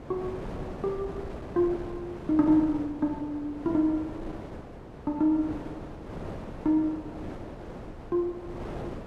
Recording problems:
wind noise; below 600 Hz, SNR 12 dB

